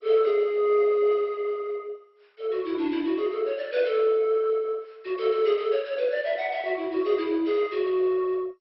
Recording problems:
lossy codec; MP2, log-spectral distance 2 dB, nothing above 5.5 kHz

